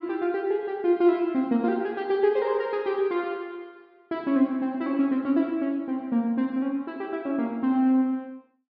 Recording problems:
treble missing; nothing above 5.5 kHz

